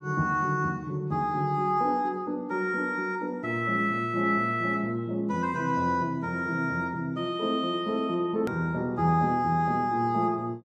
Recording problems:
hard cut with a click; at 8.5 s

